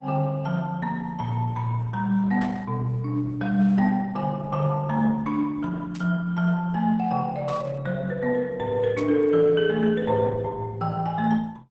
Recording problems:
codec artefacts; Opus, log-spectral distance 3 dB, nothing above 7.3 kHz
static burst; 4 times, first at 2.5 s; peak -14 dB vs average level

